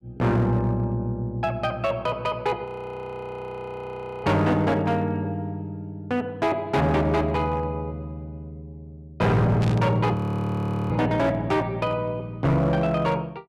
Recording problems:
distorted audio; hard clipping, signal-to-distortion ratio 10 dB
frozen audio; at 2.5 s for 1.5 s and at 10 s for 1 s
static burst; at 9.5 s; peak -8 dB vs average level

